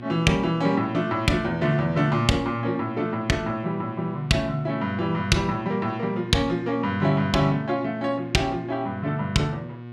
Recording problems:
hum; 60 Hz, harmonics up to 1.8 kHz, SNR 14 dB

